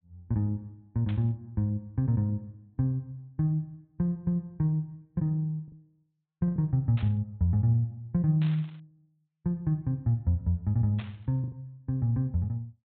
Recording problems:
low-pass filter; nothing above 4 kHz
packet loss; 1.9% of the sound replaced, filled with the last packet
burst of static; 4 times, first at 1 s; peak -11 dB vs average level

